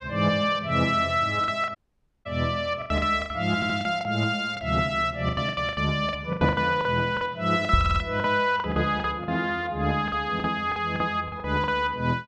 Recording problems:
packet loss; 13% of the sound replaced, filled with the last packet
dropout; at 2 s for 0.5 s
audio stuttering; at 3.5 s and at 8 s
knock on the microphone; at 7.5 s; peak +6 dB vs average level

